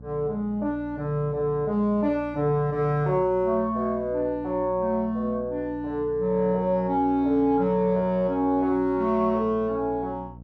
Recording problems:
hum; 60 Hz, harmonics up to 600 Hz, SNR 19 dB

